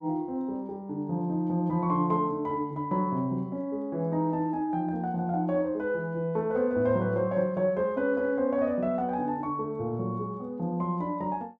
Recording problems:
none

